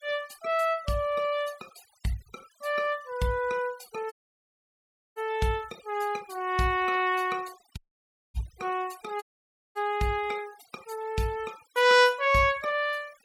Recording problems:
denoising artefacts; signal-to-artefact ratio 22 dB
dropout; at 4 s for 1 s, at 8 s for 0.5 s and at 9 s for 0.5 s

